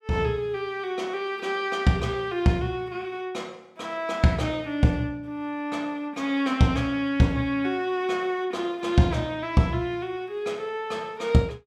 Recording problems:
none

